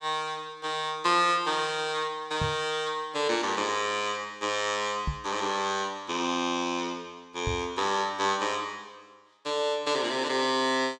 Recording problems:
microphone thump; at 2.5 s, at 5 s and at 7.5 s; peak +1 dB vs average level

